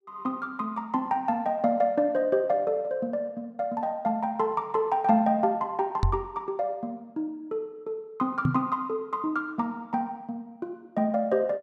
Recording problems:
knock on the microphone; at 6 s and at 8.5 s; peak +6 dB vs average level

